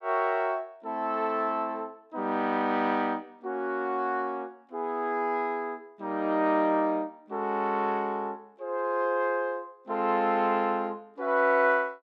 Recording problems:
none

